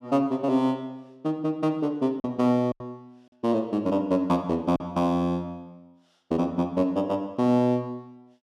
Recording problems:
lost packets; 2% of the sound replaced, filled with silence

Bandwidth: 13.5 kHz